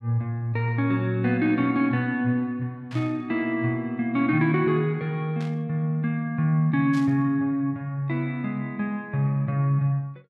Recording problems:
burst of static; at 3 s, at 5.5 s and at 7 s; peak -14 dB vs average level

